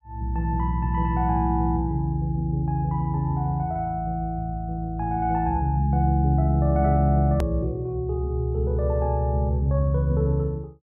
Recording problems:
hard cut with a click; at 7.5 s

